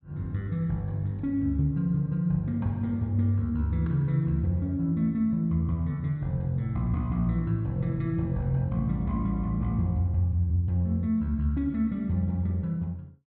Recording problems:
none

